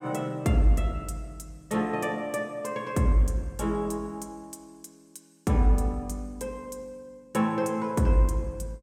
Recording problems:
none

